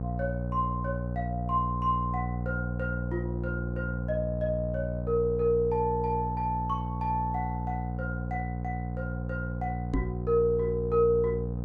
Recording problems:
hum; 60 Hz, harmonics up to 780 Hz, SNR 3 dB
microphone thump; at 10 s; peak +6 dB vs average level

